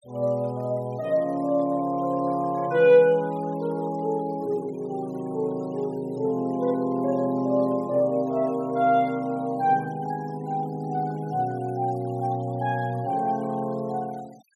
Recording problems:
noise reduction artefacts; signal-to-artefact ratio 26 dB

